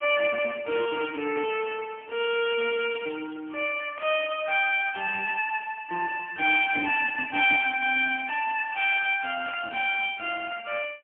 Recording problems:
phone line; 260 Hz to 3.4 kHz, AMR-NB, then MP3
burst of static; at 4 s and at 9.5 s; peak -14 dB vs average level

